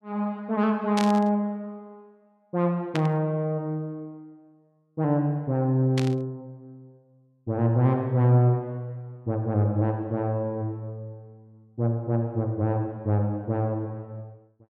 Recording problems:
burst of static; at 1 s, at 3 s and at 6 s; peak -2 dB vs average level

